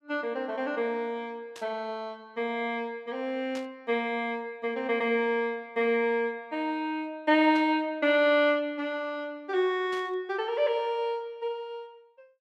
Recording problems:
static burst; 4 times, first at 1.5 s; peak -11 dB vs average level

